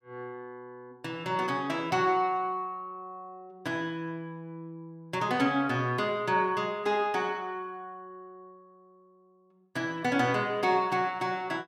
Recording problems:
none

